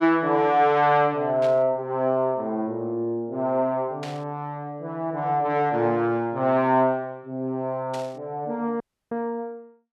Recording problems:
burst of static; at 1.5 s, at 4 s and at 8 s; peak -10 dB vs average level
audio cutting out; at 9 s

